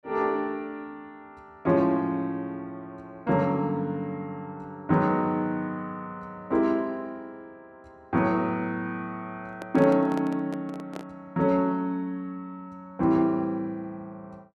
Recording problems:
handling noise; from 9.5 to 11 s; peak -6 dB vs average level

